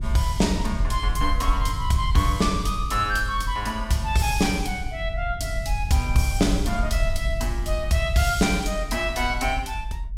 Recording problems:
low-frequency rumble; below 60 Hz, SNR 5 dB

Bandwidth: 16 kHz